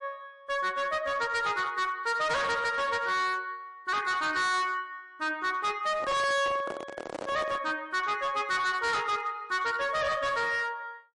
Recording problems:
lossy codec; MP3, log-spectral distance 2 dB, nothing above 10.4 kHz
distortion; hard clipping, signal-to-distortion ratio 7 dB
microphone handling noise; from 6 to 7.5 s; peak -4 dB vs average level

